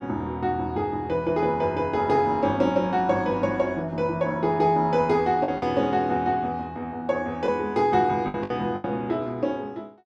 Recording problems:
lost packets; 3% of the sound replaced, filled with the last packet

